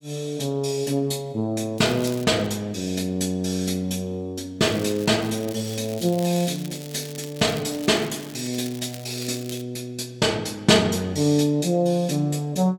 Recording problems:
crackling; at 2 s and from 4.5 to 9.5 s; loose cable, SNR 17 dB

